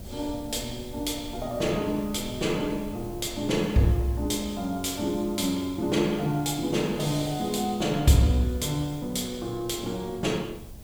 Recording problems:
background hiss; slope 0 dB per octave, SNR 22 dB
wind on the microphone; below 160 Hz, SNR 18 dB

